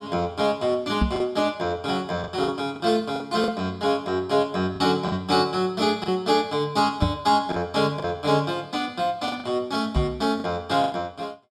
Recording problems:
lost packets; 6% of the sound replaced, filled with the last packet
microphone bump; at 1 s, at 7 s and at 10 s; peak +5 dB vs average level

